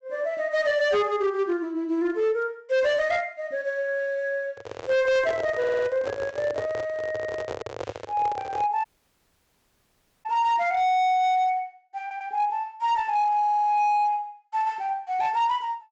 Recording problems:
treble missing; nothing above 8 kHz
distortion; hard clipping, signal-to-distortion ratio 11 dB
microphone handling noise; from 4.5 to 8.5 s; peak -2 dB vs average level
audio stuttering; at 5.5 s, at 12 s and at 13 s
audio cutting out; at 9 s for 1.5 s

